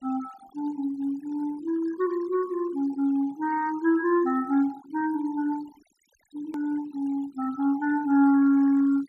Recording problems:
noise reduction artefacts; signal-to-artefact ratio 21 dB
hard cut with a click; at 6.5 s

